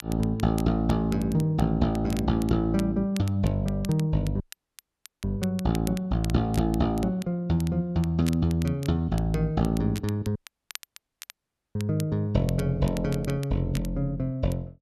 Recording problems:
crackling; vinyl, SNR 19 dB
dropout; at 4.5 s for 1 s and at 10 s for 1.5 s

